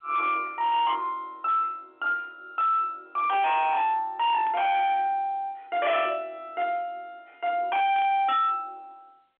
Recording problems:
telephone audio; 260 Hz to 3.5 kHz, G.711
distortion; hard clipping, signal-to-distortion ratio 7 dB
static burst; at 4.5 s, at 6 s and at 8 s; peak -15 dB vs average level

